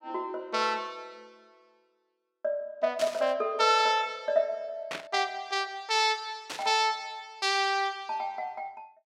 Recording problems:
burst of static; at 3 s, at 5 s and at 6.5 s; peak -3 dB vs average level

